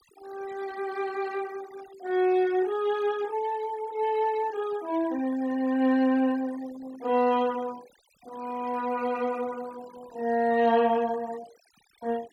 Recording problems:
noise reduction artefacts; signal-to-artefact ratio 22 dB

